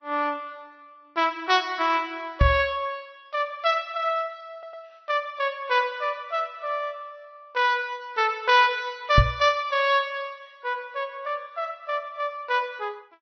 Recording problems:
treble cut off; nothing above 5.8 kHz
lossy compression; Vorbis, log-spectral distance 2 dB
knock on the microphone; at 2.5 s and at 9 s; peak +10 dB vs average level
stutter; at 4.5 s

